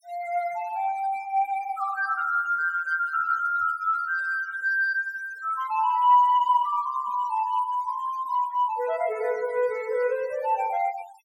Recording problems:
noise reduction artefacts; signal-to-artefact ratio 23 dB

